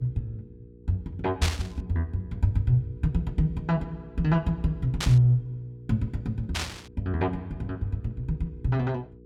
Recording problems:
hum; 60 Hz, harmonics up to 480 Hz, SNR 20 dB
static burst; at 1.5 s, at 5 s and at 6.5 s; peak +2 dB vs average level

